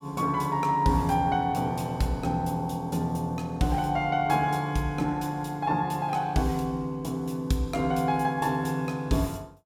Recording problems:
none

